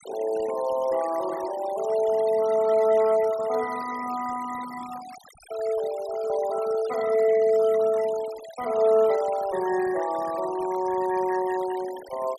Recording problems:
denoising artefacts; signal-to-artefact ratio 17 dB

